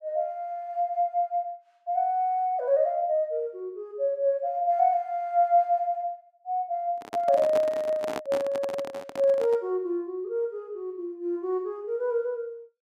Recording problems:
microphone handling noise; from 7 to 9.5 s; peak -2 dB vs average level

